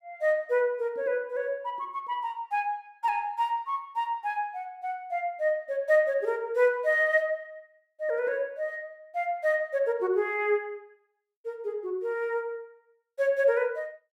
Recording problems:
none

